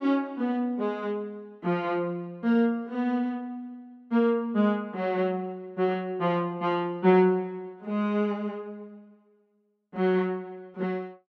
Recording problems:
none

